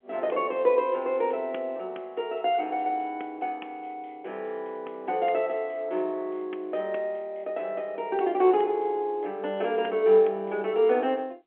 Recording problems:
telephone audio; 280 Hz to 3.5 kHz, G.711

